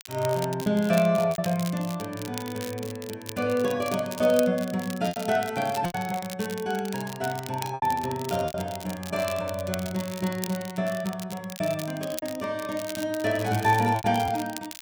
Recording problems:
crackling; vinyl, SNR 13 dB
lost packets; 5% of the sound replaced, filled with repeated pitch periods

